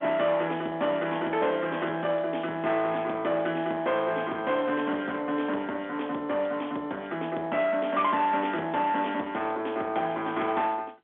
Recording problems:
phone line; 240 Hz to 3.5 kHz, G.711
distortion; soft clipping, signal-to-distortion ratio 13 dB

